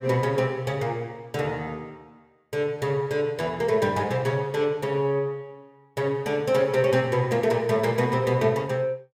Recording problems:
none

